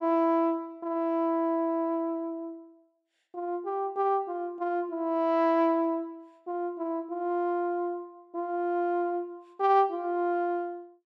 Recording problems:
none

